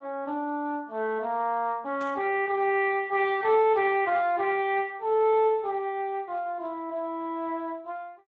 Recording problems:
codec artefacts; Speex, log-spectral distance 2 dB
static burst; at 2 s; peak -16 dB vs average level

